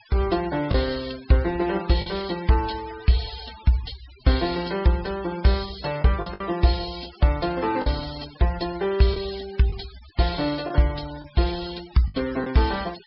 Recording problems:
treble cut off; nothing above 5.3 kHz
noise reduction artefacts; signal-to-artefact ratio 17 dB
packet loss; 3% of the sound replaced, filled with the last packet

